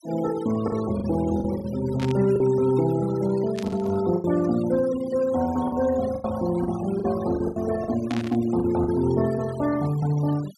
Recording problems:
denoising artefacts; signal-to-artefact ratio 17 dB
lost packets; 7% of the sound replaced, filled with the last packet
burst of static; at 2 s, at 3.5 s and at 8 s; peak -7 dB vs average level

